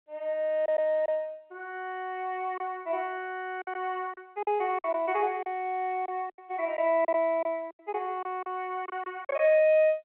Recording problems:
phone line; 280 Hz to 3.3 kHz, G.711
packet loss; 7% of the sound replaced, filled with silence

